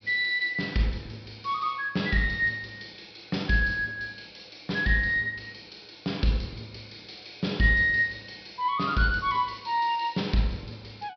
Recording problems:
treble cut off; nothing above 5.5 kHz

